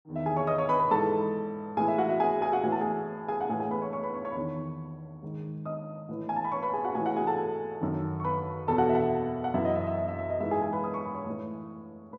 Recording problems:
none

